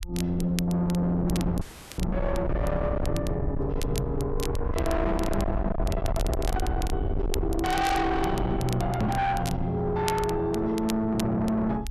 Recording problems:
distorted audio; soft clipping, signal-to-distortion ratio 6 dB
low-frequency rumble; below 180 Hz, SNR 5 dB
crackle; vinyl, SNR 15 dB
audio freezing; at 1.5 s
microphone bump; at 9 s; peak +3 dB vs average level

